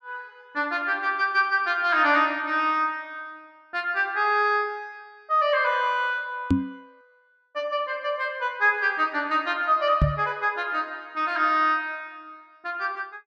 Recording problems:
microphone bump; at 6.5 s and at 10 s; peak +6 dB vs average level

